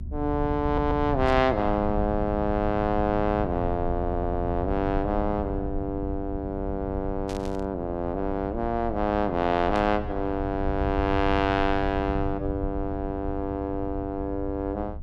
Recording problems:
hum; 60 Hz, harmonics up to 720 Hz, SNR 19 dB
rumble; below 92 Hz, SNR 8 dB
audio stuttering; at 0.5 s and at 4 s
static burst; at 1.5 s, at 7.5 s and at 10 s; peak -9 dB vs average level

